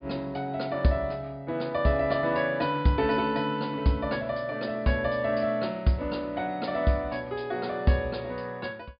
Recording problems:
treble cut off; nothing above 5 kHz

